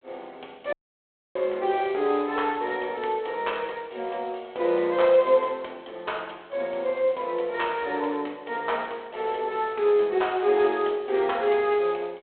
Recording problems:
telephone audio; 280 Hz to 3.7 kHz, G.726
dropout; at 0.5 s for 0.5 s

